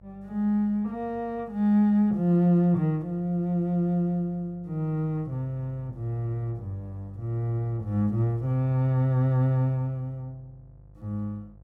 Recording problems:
hum; 50 Hz, harmonics up to 700 Hz, SNR 24 dB

